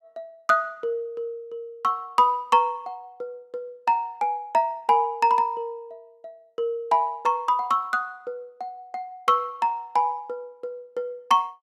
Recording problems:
none

